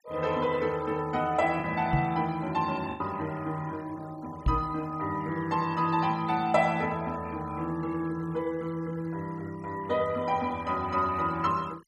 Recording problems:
denoising artefacts; signal-to-artefact ratio 22 dB
packet loss; 1% of the sound replaced, filled with the last packet
microphone bump; at 2 s and at 4.5 s; peak +6 dB vs average level

